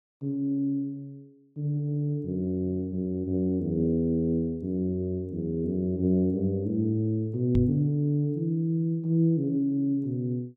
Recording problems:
microphone bump; at 7.5 s; peak +5 dB vs average level

